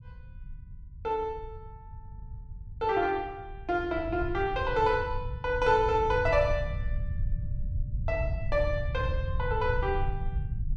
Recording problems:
rumble; below 100 Hz, SNR 6 dB

